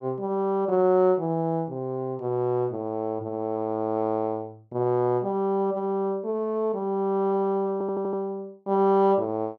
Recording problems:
stutter; at 7.5 s

